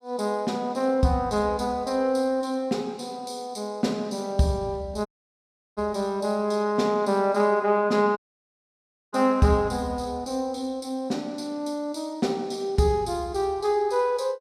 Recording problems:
dropout; at 5 s for 0.5 s and at 8 s for 1 s

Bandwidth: 15.5 kHz